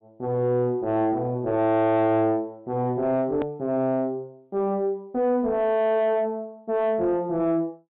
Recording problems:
low-pass filter; nothing above 4 kHz
distorted audio; soft clipping, signal-to-distortion ratio 6 dB
edit click; at 3.5 s

